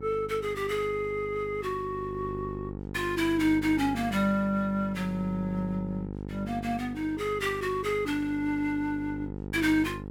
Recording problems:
hum; 50 Hz, harmonics up to 950 Hz, SNR 10 dB

